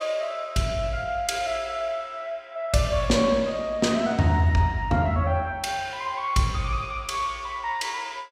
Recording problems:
none

